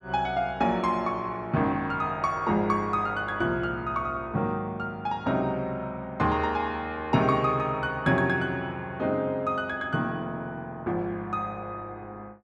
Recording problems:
none

